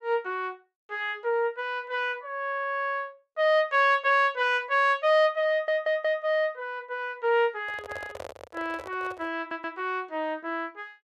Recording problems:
audio stuttering; at 2.5 s, at 5.5 s and at 9.5 s
handling noise; from 7.5 to 9.5 s; peak -8 dB vs average level

